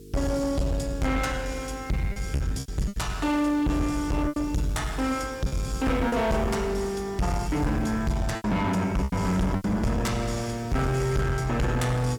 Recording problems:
distorted audio; soft clipping, signal-to-distortion ratio 7 dB
hum; 50 Hz, harmonics up to 450 Hz, SNR 18 dB
background hiss; SNR 29 dB
packet loss; 5% of the sound replaced, filled with repeated pitch periods

